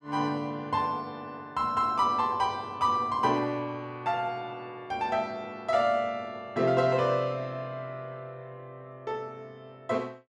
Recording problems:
none

